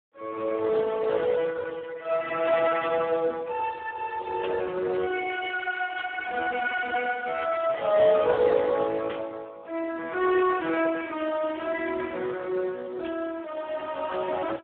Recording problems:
telephone audio; 300 Hz to 2.2 kHz, Speex
burst of static; 5 times, first at 2.5 s; peak -9 dB vs average level

